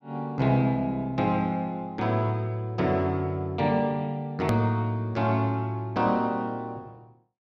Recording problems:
click at an edit; at 4.5 s

